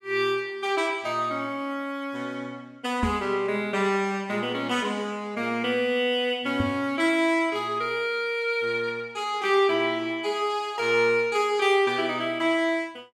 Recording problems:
microphone thump; at 3 s and at 6.5 s; peak +2 dB vs average level

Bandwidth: 14.5 kHz